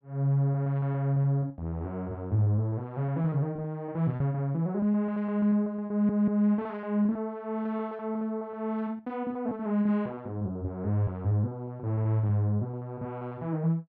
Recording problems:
lost packets; 10% of the sound replaced, filled with repeated pitch periods
audio stuttering; at 6 s

